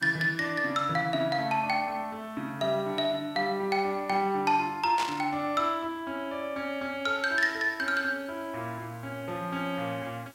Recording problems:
hiss; slope -2 dB per octave, SNR 29 dB
burst of static; at 5 s; peak -1 dB vs average level

